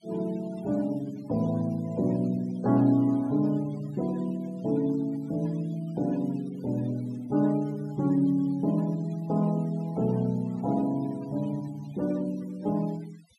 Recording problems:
noise reduction artefacts; signal-to-artefact ratio 24 dB

